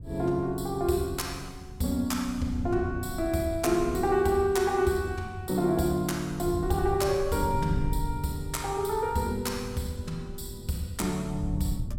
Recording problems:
wind on the microphone; below 110 Hz, SNR 11 dB

